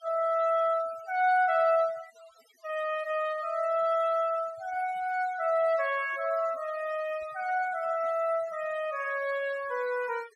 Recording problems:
noise reduction artefacts; signal-to-artefact ratio 20 dB

